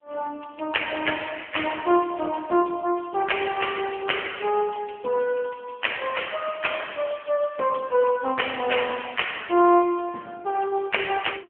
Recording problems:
phone line; 240 Hz to 3.3 kHz, AMR-NB

